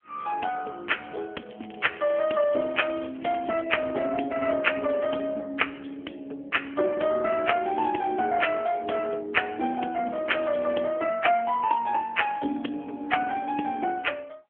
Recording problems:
phone line; 240 Hz to 3.3 kHz, AMR-NB
crackle; from 1.5 to 3.5 s and at 10 s; loose cable, SNR 25 dB

